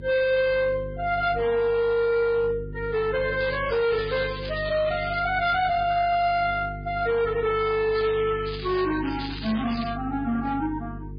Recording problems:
codec artefacts; MP3, then Vorbis, log-spectral distance 5 dB, nothing above 4.2 kHz
distortion; hard clipping, signal-to-distortion ratio 10 dB
electrical hum; 50 Hz, harmonics up to 450 Hz, SNR 13 dB
crackling; from 3.5 to 5 s and from 8 to 10 s; loose cable, SNR 12 dB

